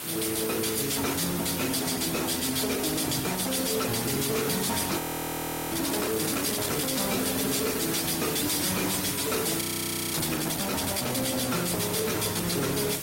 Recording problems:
codec artefacts; Opus, then Opus, log-spectral distance 10 dB, nothing above 16 kHz
distortion; soft clipping, signal-to-distortion ratio 7 dB
background hiss; slope -2 dB per octave, SNR 5 dB
crackle; from 4 to 7 s and from 7 to 9.5 s; loose cable, SNR 17 dB
frozen audio; at 5 s for 0.5 s and at 9.5 s for 0.5 s

